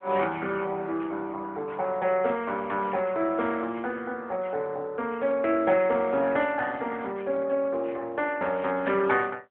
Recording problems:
phone line; 280 Hz to 3.3 kHz, AMR-NB

